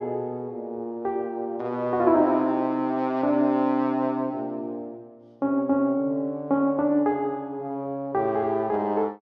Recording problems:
none

